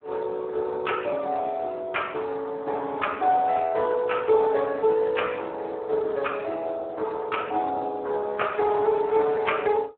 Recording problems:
telephone audio; 300 Hz to 3.4 kHz, Speex

